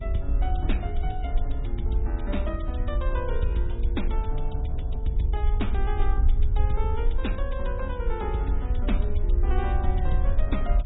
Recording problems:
low-pass filter; nothing above 3.8 kHz
lossy compression; MP3, log-spectral distance 2 dB
electrical hum; 50 Hz, harmonics up to 400 Hz, SNR 20 dB
low-frequency rumble; below 60 Hz, SNR -4 dB

